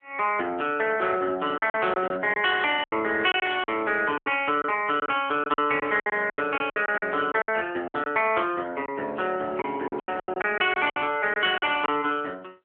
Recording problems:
phone line; 300 Hz to 3.2 kHz, AMR-NB
packet loss; 12% of the sound replaced, filled with silence

